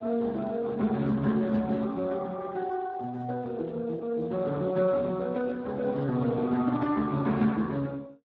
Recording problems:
lossy codec; Speex, log-spectral distance 3 dB

